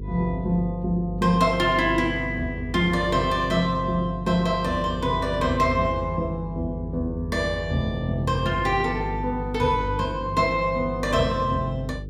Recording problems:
hum; 50 Hz, harmonics up to 500 Hz, SNR 10 dB

